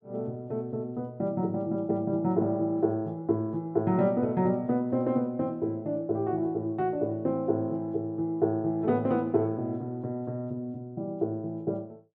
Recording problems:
none

